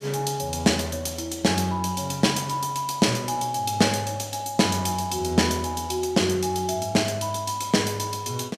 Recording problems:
none

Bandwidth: 15 kHz